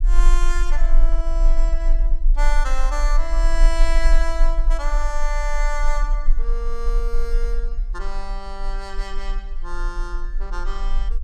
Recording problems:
low-frequency rumble; below 34 Hz, strongest tone 18 Hz, SNR -7 dB

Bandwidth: 15.5 kHz